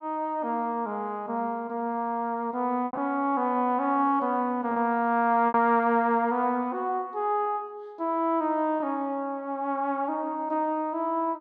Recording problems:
lost packets; 2% of the sound replaced, filled with repeated pitch periods

